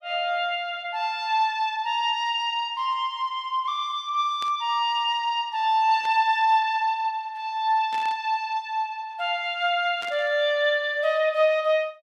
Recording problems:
burst of static; 4 times, first at 4.5 s; peak -11 dB vs average level

